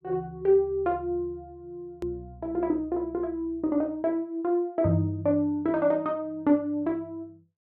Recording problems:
click at an edit; at 2 s

